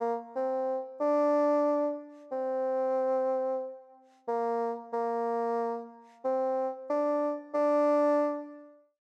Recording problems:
none

